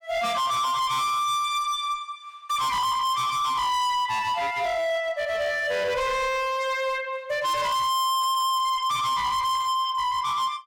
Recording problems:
distorted audio; hard clipping, signal-to-distortion ratio 6 dB

